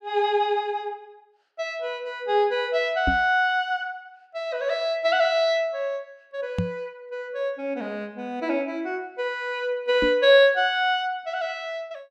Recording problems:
knock on the microphone; at 3 s, at 6.5 s and at 10 s; peak +2 dB vs average level

